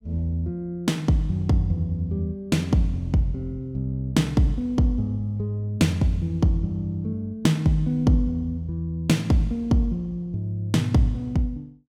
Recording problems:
none

